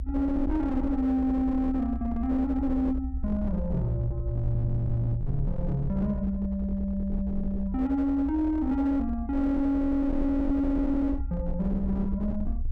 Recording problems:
distortion; hard clipping, signal-to-distortion ratio 11 dB
rumble; below 66 Hz, SNR 7 dB

